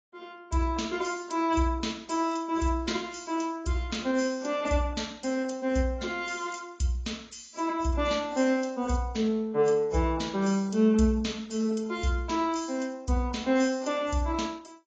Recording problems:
codec artefacts; AAC, log-spectral distance 3 dB

